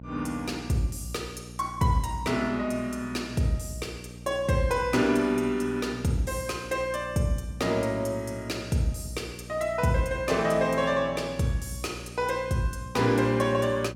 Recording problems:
hum; 60 Hz, harmonics up to 600 Hz, SNR 16 dB

